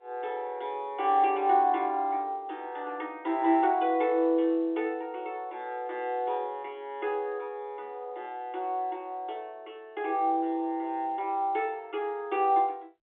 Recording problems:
telephone audio; 280 Hz to 3.7 kHz, G.711

